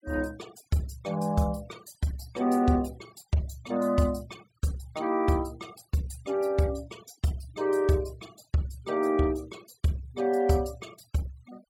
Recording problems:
noise reduction artefacts; signal-to-artefact ratio 23 dB

